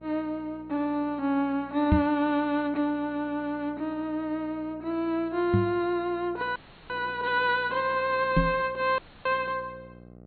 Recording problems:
low-pass filter; nothing above 4.3 kHz
mains hum; 60 Hz, harmonics up to 840 Hz, SNR 22 dB
microphone thump; at 2 s, at 5.5 s and at 8.5 s; peak +8 dB vs average level
dropout; at 6.5 s and at 9 s

